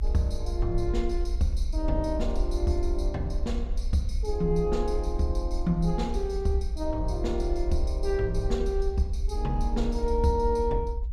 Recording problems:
rumble; below 60 Hz, SNR 2 dB

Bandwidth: 14.5 kHz